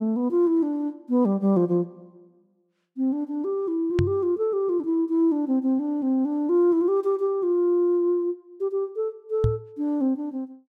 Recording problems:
microphone bump; at 4 s and at 9.5 s; peak +4 dB vs average level

